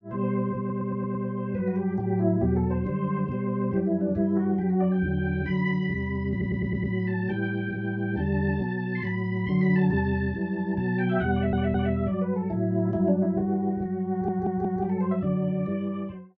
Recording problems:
stutter; 4 times, first at 0.5 s

